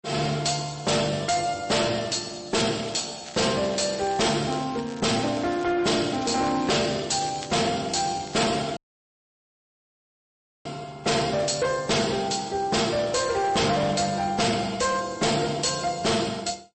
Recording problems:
codec artefacts; MP3, log-spectral distance 8 dB, nothing above 8.2 kHz
distorted audio; hard clipping, signal-to-distortion ratio 7 dB
crackle; at 2.5 s, from 3 to 5.5 s and from 6 to 8.5 s; loose cable, SNR 19 dB
dropout; at 9 s for 2 s

